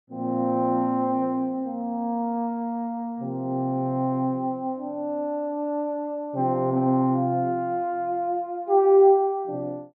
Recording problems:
none

